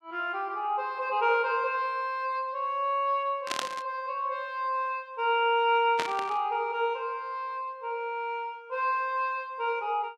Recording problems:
burst of static; at 3.5 s and at 6 s; peak +2 dB vs average level

